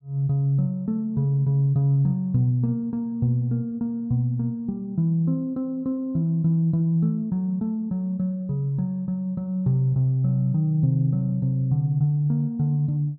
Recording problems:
none

